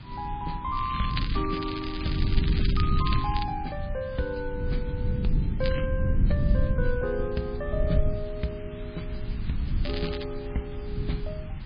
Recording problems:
lossy compression; MP3, log-spectral distance 5 dB
background hiss; SNR 17 dB
rumble; below 120 Hz, SNR -2 dB
crackling; from 1 to 3.5 s, at 5.5 s and at 10 s; loose cable, SNR 6 dB

